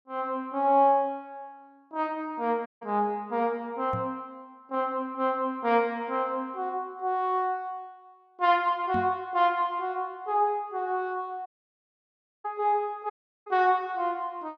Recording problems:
dropout; at 2.5 s, at 11 s for 1 s and at 13 s
knock on the microphone; at 4 s and at 9 s; peak -3 dB vs average level

